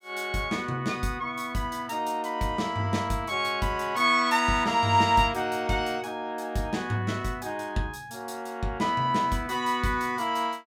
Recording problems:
none

